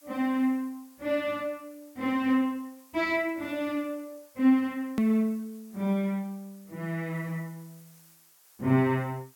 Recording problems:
hiss; SNR 27 dB
hard cut with a click; at 5 s

